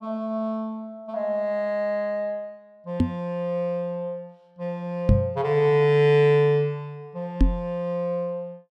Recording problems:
knock on the microphone; at 3 s, at 5 s and at 7.5 s; peak +9 dB vs average level

